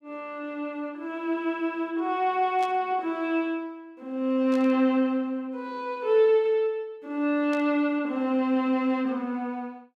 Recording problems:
static burst; at 2.5 s, at 4.5 s and at 7.5 s; peak -12 dB vs average level

